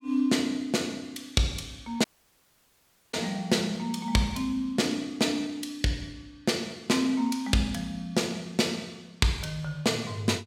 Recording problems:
dropout; at 2 s for 1 s

